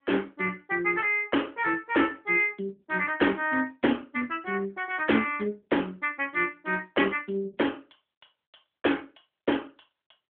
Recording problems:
telephone audio; 220 Hz to 3.4 kHz, AMR-NB

